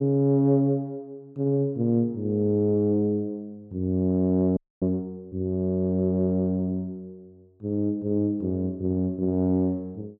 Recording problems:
audio freezing; at 4.5 s

